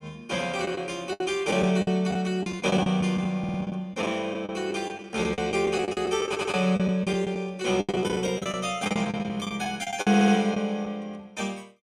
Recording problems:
lost packets; 13% of the sound replaced, filled with the last packet
stutter; at 3.5 s, at 6.5 s and at 10 s

